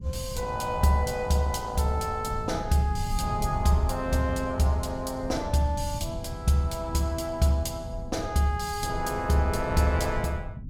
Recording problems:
low-frequency rumble; below 130 Hz, SNR 9 dB

